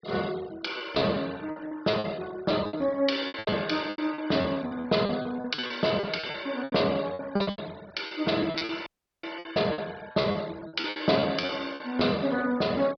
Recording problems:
low-pass filter; nothing above 5.5 kHz
noise reduction artefacts; signal-to-artefact ratio 20 dB
packet loss; 17% of the sound replaced, filled with repeated pitch periods
audio cutting out; at 9 s

